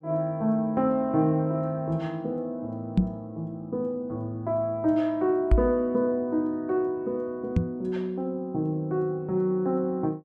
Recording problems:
microphone bump; at 3 s, at 5.5 s and at 7.5 s; peak +10 dB vs average level

